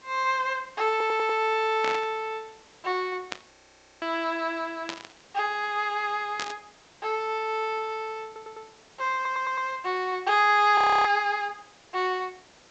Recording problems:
treble cut off; nothing above 8 kHz
hiss; slope -2 dB per octave, SNR 27 dB
audio stuttering; at 1 s, at 8.5 s and at 9 s
static burst; 4 times, first at 2 s; peak -2 dB vs average level
frozen audio; at 3.5 s and at 11 s

